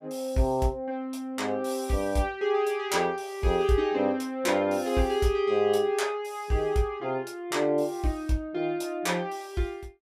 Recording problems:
none

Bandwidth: 15.5 kHz